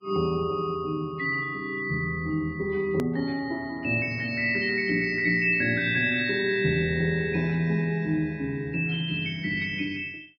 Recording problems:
codec artefacts; Vorbis, log-spectral distance 2 dB, nothing above 5 kHz
hard cut with a click; at 3 s

